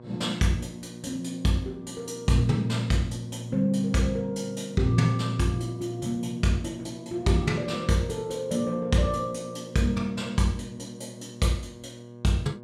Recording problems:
hum; 60 Hz, harmonics up to 1.1 kHz, SNR 18 dB

